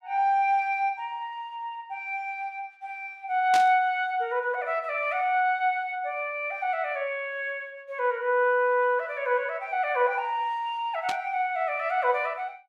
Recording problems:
static burst; at 3.5 s and at 11 s; peak -2 dB vs average level

